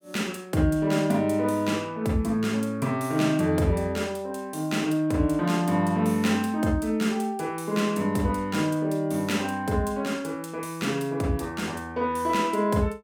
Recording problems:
none

